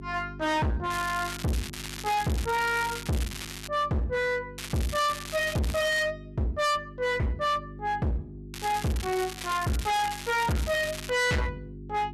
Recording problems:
distorted audio; hard clipping, signal-to-distortion ratio 6 dB
hum; 50 Hz, harmonics up to 400 Hz, SNR 16 dB
crackle; from 1 to 3.5 s, from 4.5 to 6 s and from 8.5 to 11 s; loose cable, SNR 9 dB

